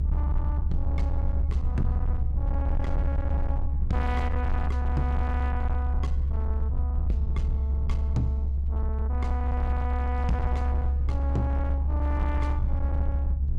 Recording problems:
distortion; hard clipping, uneven, signal-to-distortion ratio 11 dB
rumble; below 70 Hz, strongest tone 68 Hz, SNR -7 dB

